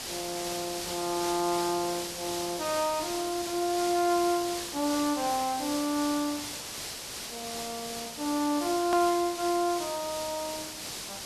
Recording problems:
background hiss; slope 0 dB per octave, SNR 6 dB
hard cut with a click; at 9 s

